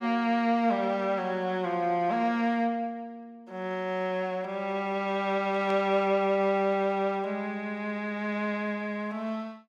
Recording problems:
burst of static; at 5.5 s; peak -11 dB vs average level

